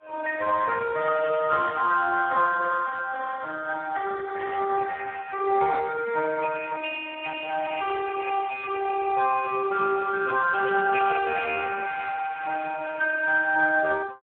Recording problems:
telephone audio; 280 Hz to 2.1 kHz, Speex
burst of static; at 4.5 s and at 8 s; peak -12 dB vs average level

